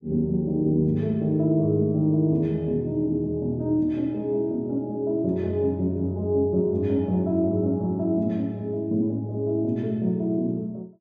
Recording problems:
none

